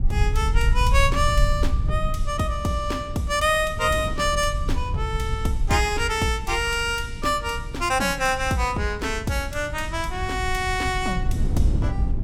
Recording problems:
low-frequency rumble; below 74 Hz, SNR 5 dB
wind noise; below 170 Hz, SNR 12 dB

